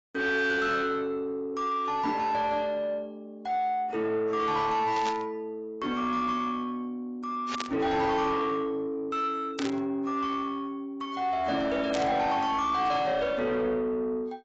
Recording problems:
lossy codec; AAC, log-spectral distance 2 dB, nothing above 7.3 kHz
distorted audio; soft clipping, signal-to-distortion ratio 10 dB
static burst; 4 times, first at 5 s; peak -1 dB vs average level

